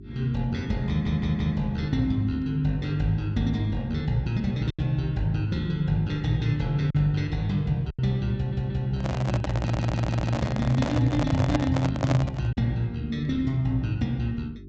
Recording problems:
low-pass filter; nothing above 8 kHz
electrical hum; 50 Hz, harmonics up to 400 Hz, SNR 17 dB
lost packets; 1.8% of the sound replaced, filled with silence
audio stuttering; at 1 s, at 8.5 s and at 9.5 s
handling noise; from 9 to 13 s; peak +4 dB vs average level

